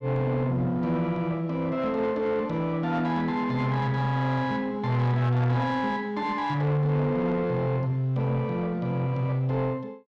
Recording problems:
distorted audio; soft clipping, signal-to-distortion ratio 11 dB

